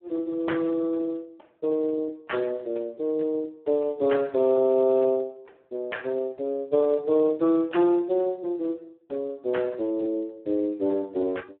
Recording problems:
phone line; 260 Hz to 3.3 kHz, Speex

